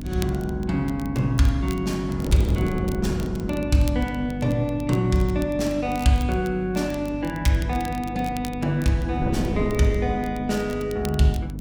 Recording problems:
hum; 50 Hz, harmonics up to 300 Hz, SNR 10 dB
wind noise; below 320 Hz, SNR 11 dB
crackle; vinyl, SNR 20 dB

